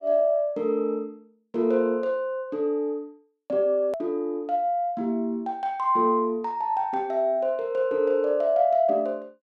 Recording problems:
hard cut with a click; at 4 s

